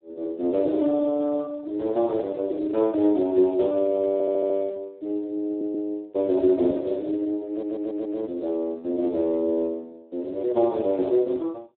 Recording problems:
telephone audio; 280 Hz to 2.2 kHz, Speex
stutter; at 4 s, at 5.5 s and at 7.5 s

